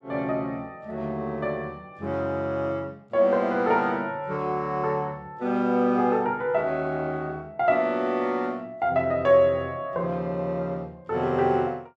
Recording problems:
none

